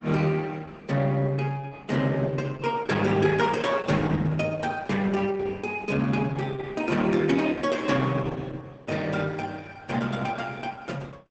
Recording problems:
lossy codec; Opus, log-spectral distance 4 dB, nothing above 8 kHz

